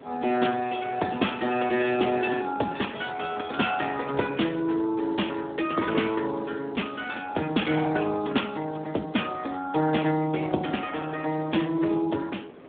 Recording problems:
phone line; 170 Hz to 3.6 kHz, Speex
wind noise; below 690 Hz, SNR 19 dB

